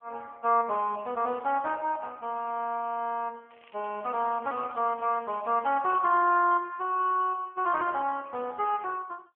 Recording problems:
phone line; 300 Hz to 3.1 kHz, AMR-NB
crackle; from 3.5 to 6.5 s; loose cable, SNR 27 dB

